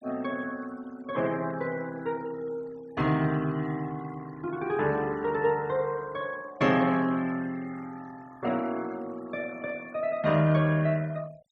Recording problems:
noise reduction artefacts; signal-to-artefact ratio 22 dB

